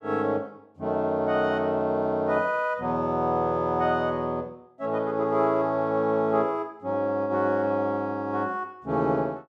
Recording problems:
none

